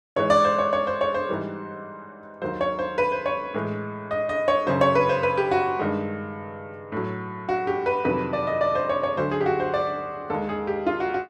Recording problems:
none

